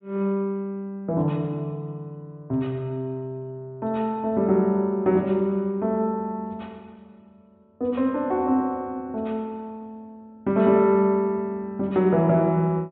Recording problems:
treble cut off; nothing above 4 kHz

